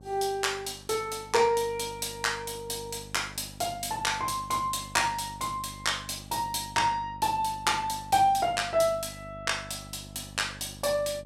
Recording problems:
electrical hum; 50 Hz, harmonics up to 900 Hz, SNR 18 dB

